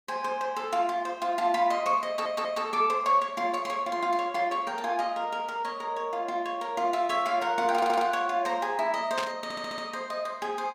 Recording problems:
audio stuttering; at 2 s, at 8 s and at 9.5 s
burst of static; at 9 s; peak -1 dB vs average level

